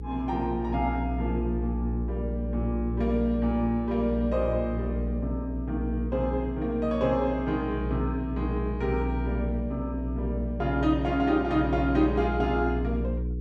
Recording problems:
hum; 60 Hz, harmonics up to 480 Hz, SNR 4 dB

